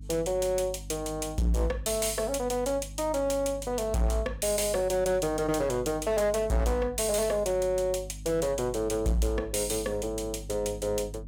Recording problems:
distortion; hard clipping, signal-to-distortion ratio 7 dB
hum; 50 Hz, harmonics up to 300 Hz, SNR 15 dB

